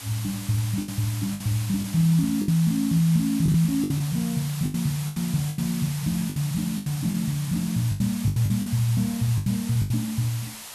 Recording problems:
hiss; SNR 12 dB
lost packets; 11% of the sound replaced, filled with the last packet

